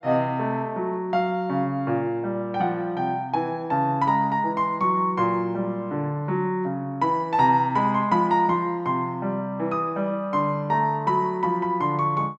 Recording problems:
none

